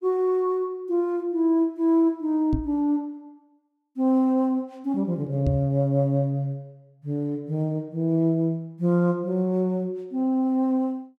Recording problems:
microphone bump; at 2.5 s and at 5.5 s; peak +3 dB vs average level

